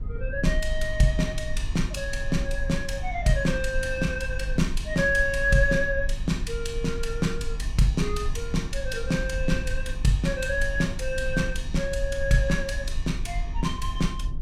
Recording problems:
electrical hum; 50 Hz, harmonics up to 300 Hz, SNR 14 dB
low-frequency rumble; below 50 Hz, strongest tone 20 Hz, SNR 7 dB

